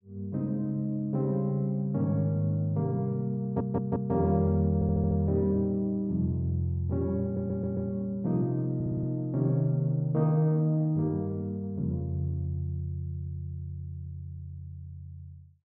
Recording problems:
stutter; 4 times, first at 3.5 s

